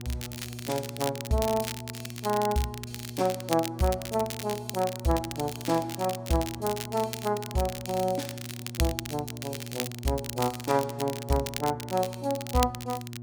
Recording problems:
hum; 60 Hz, harmonics up to 720 Hz, SNR 11 dB
crackling; vinyl, SNR 8 dB

